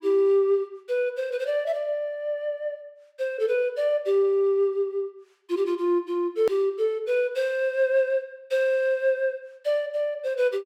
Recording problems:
edit click; at 6.5 s

